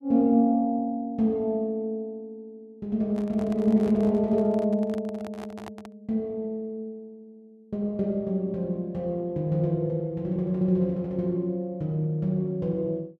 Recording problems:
microphone handling noise; from 3 to 6 s; peak -10 dB vs average level

